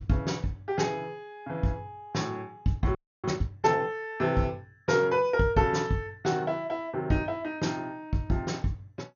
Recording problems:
lossy compression; MP2, log-spectral distance 2 dB, nothing above 6.7 kHz
frozen audio; at 3 s

